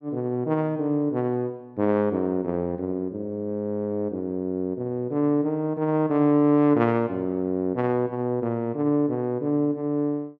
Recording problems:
none

